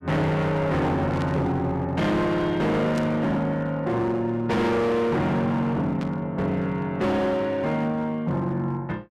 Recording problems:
distortion; hard clipping, signal-to-distortion ratio 8 dB
static burst; at 1 s, at 3 s and at 6 s; peak -10 dB vs average level

